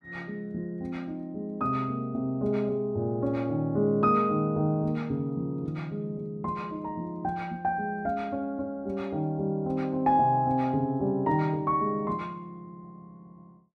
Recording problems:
none

